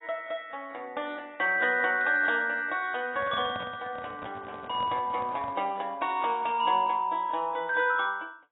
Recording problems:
lossy compression; AAC, log-spectral distance 3 dB, nothing above 3.4 kHz
handling noise; from 3 to 5.5 s; peak -9 dB vs average level

